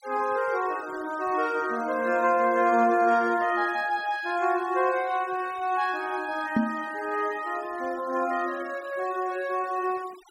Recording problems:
noise reduction artefacts; signal-to-artefact ratio 20 dB
microphone thump; at 6.5 s; peak +5 dB vs average level

